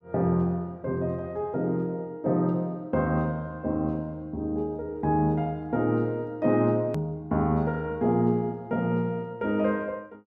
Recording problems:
click at an edit; at 7 s

